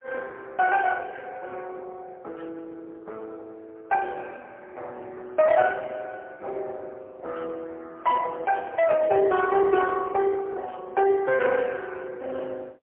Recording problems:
phone line; 320 Hz to 2.3 kHz, AMR-NB, then MP3

